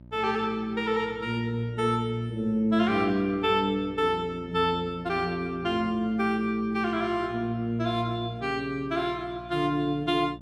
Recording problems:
hum; 60 Hz, harmonics up to 900 Hz, SNR 20 dB

